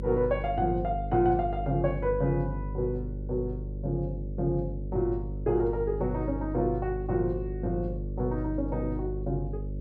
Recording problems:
mains hum; 50 Hz, harmonics up to 600 Hz, SNR 5 dB

